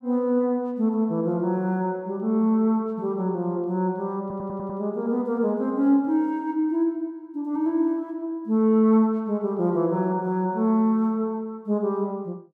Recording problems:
audio stuttering; at 4 s

